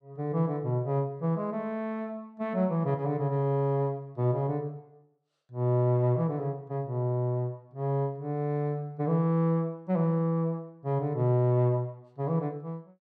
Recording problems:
none

